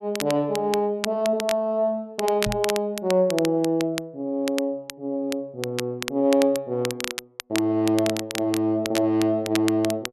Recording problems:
crackle; vinyl, SNR 10 dB
knock on the microphone; at 2.5 s; peak -3 dB vs average level

